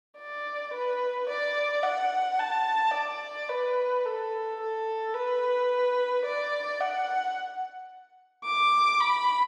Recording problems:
none

